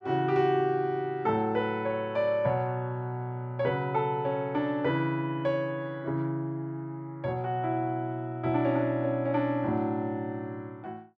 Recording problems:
none

